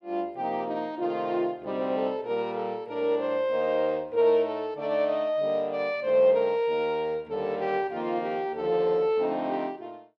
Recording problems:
none

